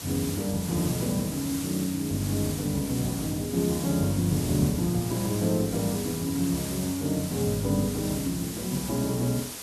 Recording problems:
background hiss; slope -1 dB per octave, SNR 8 dB

